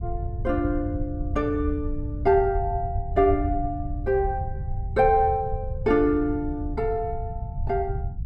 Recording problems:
rumble; below 98 Hz, SNR 7 dB

